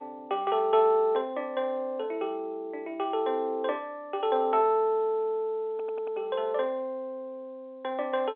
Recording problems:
phone line; 340 Hz to 3.8 kHz, G.711
audio stuttering; at 5.5 s

